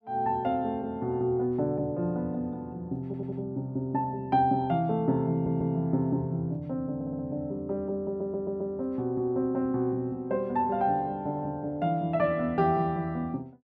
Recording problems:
audio stuttering; 4 times, first at 3 s

